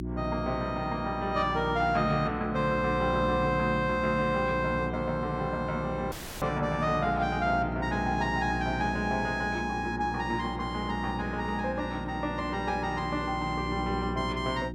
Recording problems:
electrical hum; 60 Hz, harmonics up to 360 Hz, SNR 7 dB
dropout; at 6 s

